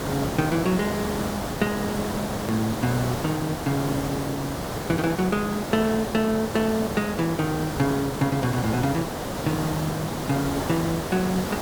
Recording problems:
background hiss; SNR 3 dB
hard cut with a click; at 2.5 s

